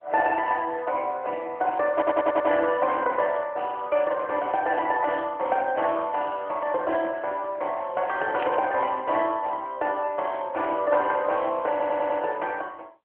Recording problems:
phone line; 260 Hz to 3.2 kHz, AMR-NB
audio stuttering; at 2 s and at 12 s
static burst; at 8.5 s; peak -5 dB vs average level

